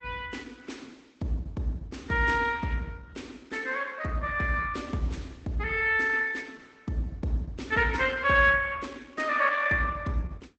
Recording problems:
codec artefacts; Opus, log-spectral distance 4 dB, nothing above 8 kHz

